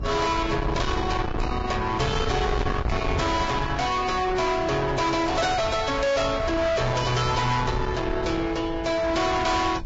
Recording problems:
codec artefacts; Vorbis, log-spectral distance 3 dB, nothing above 7.3 kHz
distortion; soft clipping, signal-to-distortion ratio 7 dB
wind noise; below 910 Hz, SNR 6 dB

